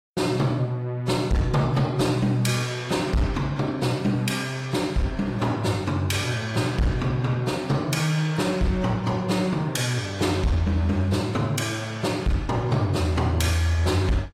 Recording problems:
lossy codec; AAC, log-spectral distance 2 dB, nothing above 15.1 kHz
distorted audio; hard clipping, signal-to-distortion ratio 12 dB

